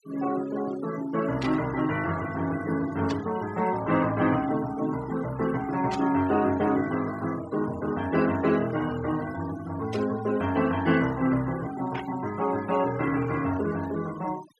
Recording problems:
denoising artefacts; signal-to-artefact ratio 17 dB
burst of static; 5 times, first at 1.5 s; peak -6 dB vs average level

